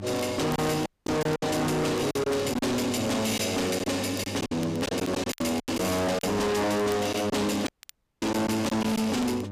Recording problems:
distortion; soft clipping, signal-to-distortion ratio 6 dB
electrical hum; 50 Hz, harmonics up to 1.2 kHz, SNR 13 dB
crackle; vinyl, SNR 22 dB
lost packets; 8% of the sound replaced, filled with silence
dropout; at 1 s and at 7.5 s for 0.5 s

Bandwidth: 15 kHz